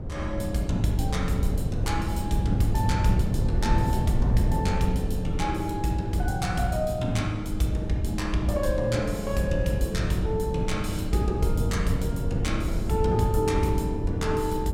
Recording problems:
wind noise; below 140 Hz, SNR 3 dB

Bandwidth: 16 kHz